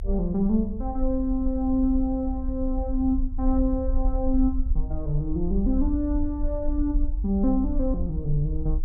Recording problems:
rumble; below 52 Hz, strongest tone 26 Hz, SNR 4 dB

